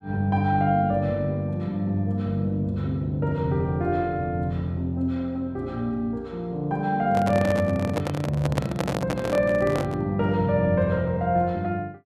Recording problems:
handling noise; from 7 to 10 s; peak +2 dB vs average level

